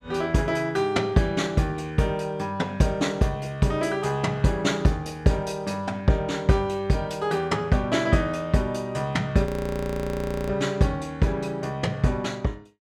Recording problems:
audio freezing; at 9.5 s for 1 s

